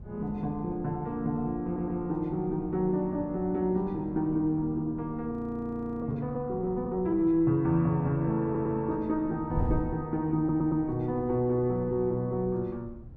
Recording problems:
wind noise; below 130 Hz, SNR 15 dB
stutter; at 1.5 s, at 8.5 s and at 10 s
frozen audio; at 5.5 s for 0.5 s

